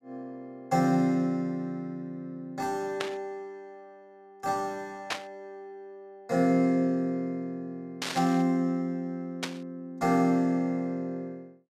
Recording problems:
burst of static; 4 times, first at 3 s; peak +2 dB vs average level

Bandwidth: 14.5 kHz